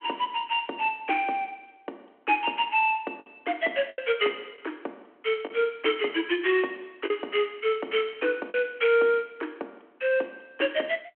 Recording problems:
telephone audio; 240 Hz to 3.3 kHz, G.726
packet loss; 3% of the sound replaced, filled with the last packet

